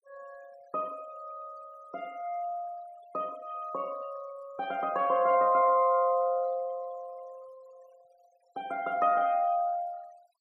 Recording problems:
denoising artefacts; signal-to-artefact ratio 28 dB

